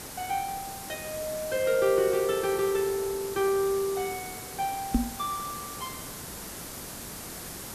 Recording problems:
hiss; SNR 9 dB
microphone bump; at 5 s; peak +8 dB vs average level

